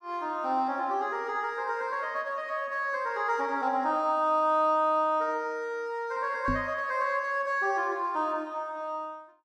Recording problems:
microphone bump; at 6.5 s; peak 0 dB vs average level

